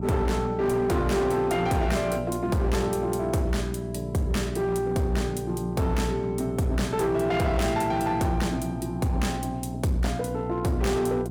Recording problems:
distorted audio; hard clipping, uneven, signal-to-distortion ratio 10 dB
mains hum; 60 Hz, harmonics up to 720 Hz, SNR 8 dB

